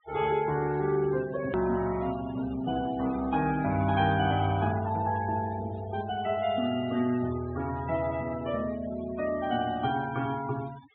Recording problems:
low-pass filter; nothing above 4 kHz
noise reduction artefacts; signal-to-artefact ratio 17 dB
hard cut with a click; at 1.5 s

